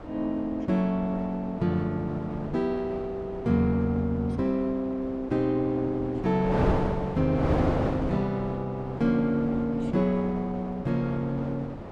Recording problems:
wind on the microphone; below 650 Hz, SNR 7 dB

